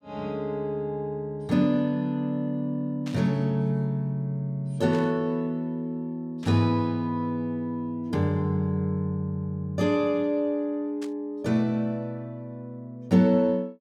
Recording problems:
burst of static; 4 times, first at 3 s; peak -12 dB vs average level

